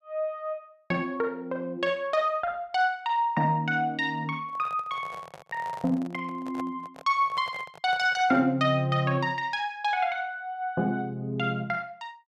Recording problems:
microphone handling noise; from 4.5 to 8.5 s; peak -8 dB vs average level

